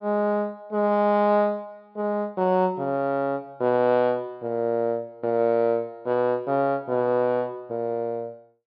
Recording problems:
treble missing; nothing above 5.5 kHz

